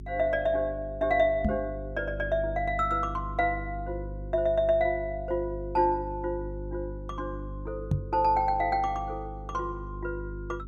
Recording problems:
mains hum; 50 Hz, harmonics up to 400 Hz, SNR 11 dB
microphone thump; at 1.5 s and at 8 s; peak +6 dB vs average level

